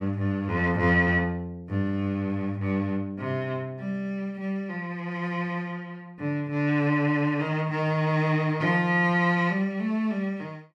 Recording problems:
none

